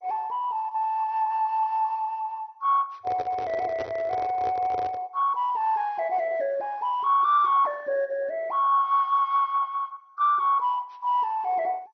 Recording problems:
codec artefacts; MP2, log-spectral distance 3 dB
handling noise; from 3 to 5 s; peak -6 dB vs average level

